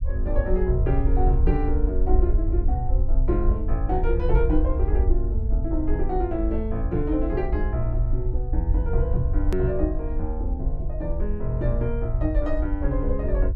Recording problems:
low-frequency rumble; below 60 Hz, SNR -2 dB
hard cut with a click; at 9.5 s

